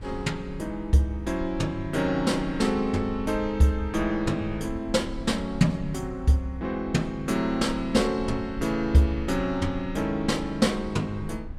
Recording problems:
low-frequency rumble; below 78 Hz, SNR 15 dB

